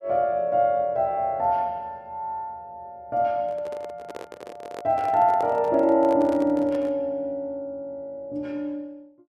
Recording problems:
microphone handling noise; from 3.5 to 7 s; peak -7 dB vs average level

